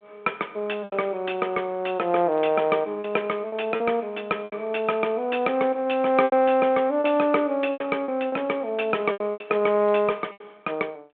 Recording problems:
telephone audio; 220 Hz to 3.3 kHz, G.726
lost packets; 7% of the sound replaced, filled with repeated pitch periods

